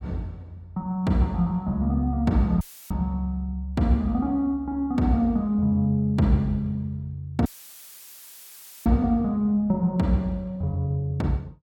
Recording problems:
dropout; at 2.5 s and at 7.5 s for 1.5 s; filled with static

